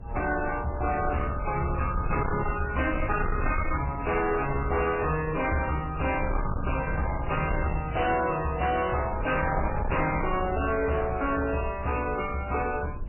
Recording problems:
lossy codec; MP3, then MP3, log-spectral distance 5 dB, nothing above 2.8 kHz
distortion; hard clipping, uneven, signal-to-distortion ratio 7 dB
rumble; below 140 Hz, SNR 8 dB

